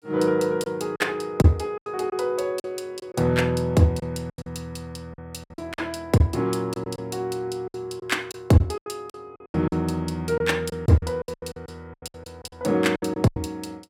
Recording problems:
lost packets; 13% of the sound replaced, filled with silence

